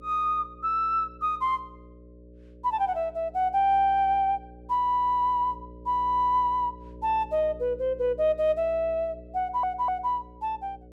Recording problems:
hum; 60 Hz, harmonics up to 600 Hz, SNR 21 dB
audio stuttering; at 9.5 s

